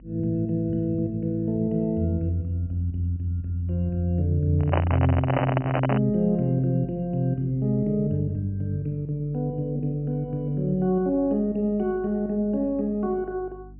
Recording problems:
treble missing; nothing above 3 kHz
hum; 50 Hz, harmonics up to 300 Hz, SNR 22 dB
microphone handling noise; from 4.5 to 6 s; peak +3 dB vs average level

